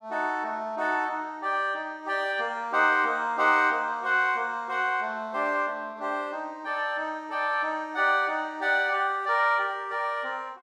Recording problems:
none

